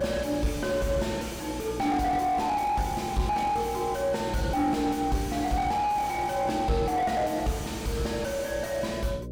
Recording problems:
distorted audio; soft clipping, signal-to-distortion ratio 6 dB
electrical hum; 60 Hz, harmonics up to 600 Hz, SNR 13 dB

